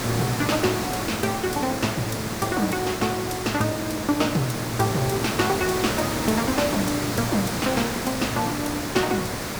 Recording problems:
background hiss; slope -4 dB per octave, SNR 3 dB

